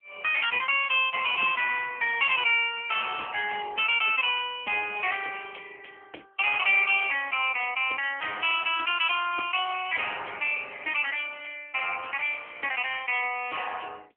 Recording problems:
phone line; 390 Hz to 3.2 kHz, AMR-NB

